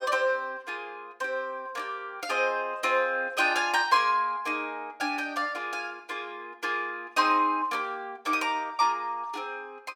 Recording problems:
none

